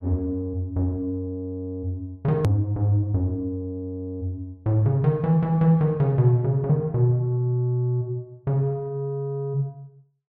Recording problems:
edit click; at 2.5 s

